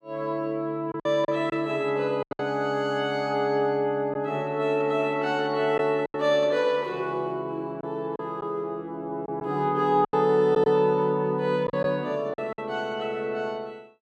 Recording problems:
packet loss; 5% of the sound replaced, filled with silence

